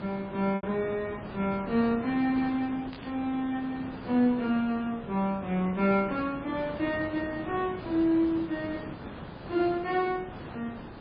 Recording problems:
codec artefacts; MP3, log-spectral distance 3 dB, nothing above 4.4 kHz
background hiss; SNR 12 dB
packet loss; 0.9% of the sound replaced, filled with repeated pitch periods
burst of static; at 3 s; peak -12 dB vs average level

